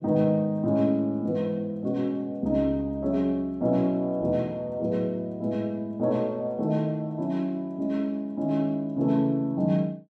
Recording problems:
none

